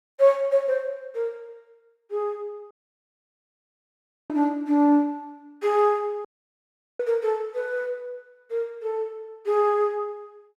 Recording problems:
audio cutting out; at 2.5 s for 1.5 s and at 6.5 s for 0.5 s

